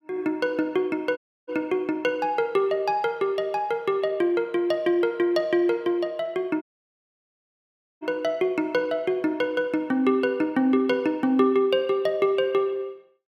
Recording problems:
audio cutting out; at 1 s and at 6.5 s for 1.5 s

